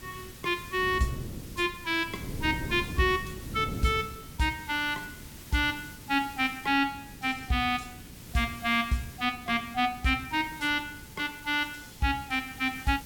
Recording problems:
background hiss; slope +1 dB per octave, SNR 18 dB
wind noise; below 260 Hz, SNR 14 dB

